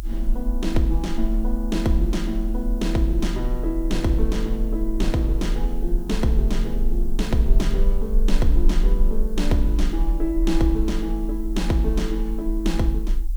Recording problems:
hiss; SNR 26 dB
rumble; below 38 Hz, SNR 2 dB

